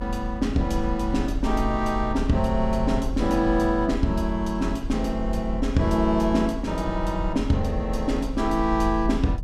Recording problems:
rumble; below 54 Hz, strongest tone 42 Hz, SNR 7 dB

